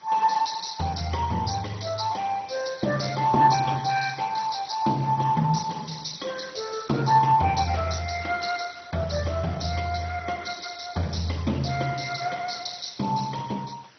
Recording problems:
lossy compression; Speex, then MP2, log-spectral distance 9 dB, nothing above 6 kHz
hiss; slope -1 dB per octave, SNR 27 dB

